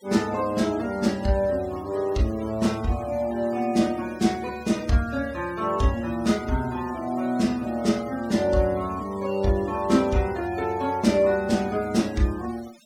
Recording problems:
denoising artefacts; signal-to-artefact ratio 21 dB

